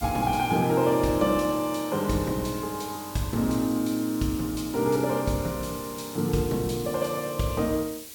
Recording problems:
hiss; SNR 14 dB

